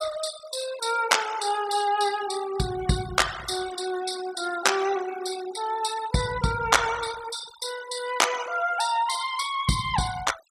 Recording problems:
noise reduction artefacts; signal-to-artefact ratio 12 dB

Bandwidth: 15.5 kHz